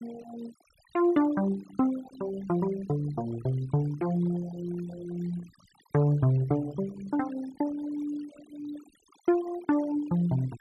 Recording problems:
noise reduction artefacts; signal-to-artefact ratio 20 dB

